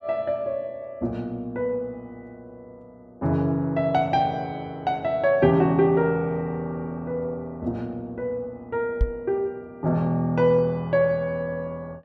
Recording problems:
microphone bump; at 9 s; peak +5 dB vs average level

